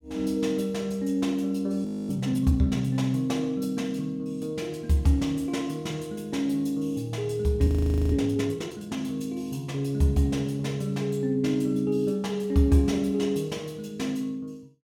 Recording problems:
frozen audio; at 2 s and at 7.5 s

